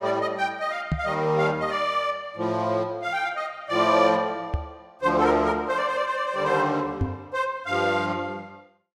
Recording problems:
microphone thump; at 1 s, at 4.5 s and at 7 s; peak +3 dB vs average level

